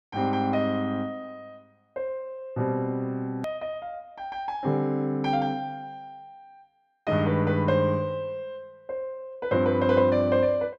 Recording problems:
click at an edit; at 3.5 s

